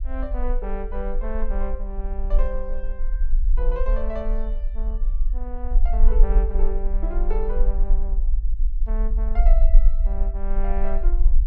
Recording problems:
rumble; below 38 Hz, strongest tone 22 Hz, SNR -9 dB

